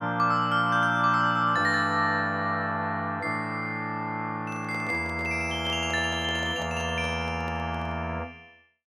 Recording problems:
microphone handling noise; from 4.5 to 8 s; peak -10 dB vs average level

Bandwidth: 16 kHz